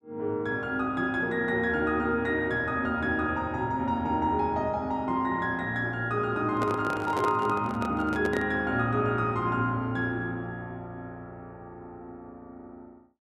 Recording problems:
microphone handling noise; from 6.5 to 8.5 s; peak -1 dB vs average level

